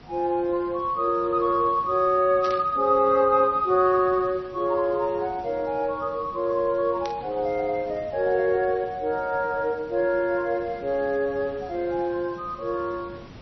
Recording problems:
lossy compression; MP3, log-spectral distance 2 dB, nothing above 5.5 kHz
hiss; slope -5 dB per octave, SNR 21 dB
static burst; at 2.5 s and at 7 s; peak -10 dB vs average level

